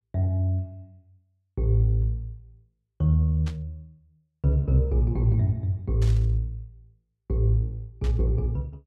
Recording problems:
static burst; at 3.5 s, at 6 s and at 8 s; peak -13 dB vs average level

